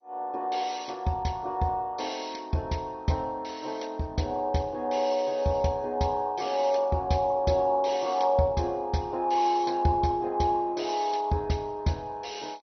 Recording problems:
lossy compression; MP2, log-spectral distance 5 dB, nothing above 6 kHz

